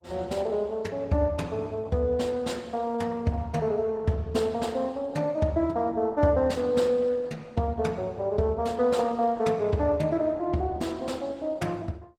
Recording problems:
codec artefacts; Opus, log-spectral distance 2 dB, nothing above 19 kHz

